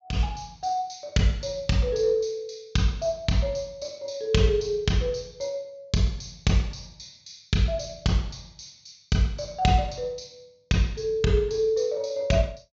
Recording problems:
treble cut off; nothing above 7.3 kHz

